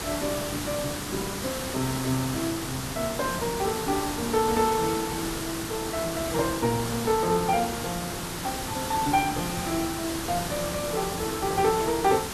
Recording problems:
hiss; slope -3 dB per octave, SNR 4 dB

